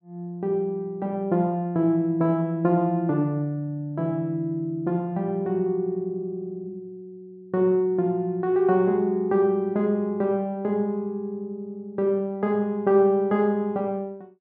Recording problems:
low-pass filter; nothing above 5.4 kHz

